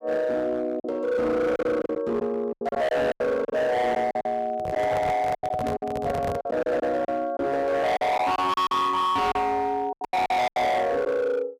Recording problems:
distortion; hard clipping, signal-to-distortion ratio 7 dB
lost packets; 11% of the sound replaced, filled with silence
microphone handling noise; from 4.5 to 6.5 s; peak -2 dB vs average level

